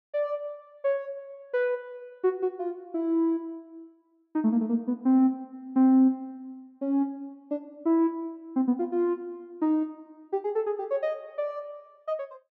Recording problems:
none

